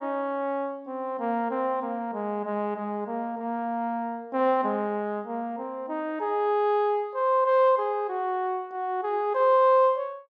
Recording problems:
none

